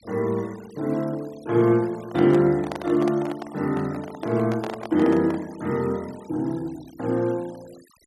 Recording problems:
denoising artefacts; signal-to-artefact ratio 23 dB
handling noise; from 2 to 5.5 s; peak -4 dB vs average level

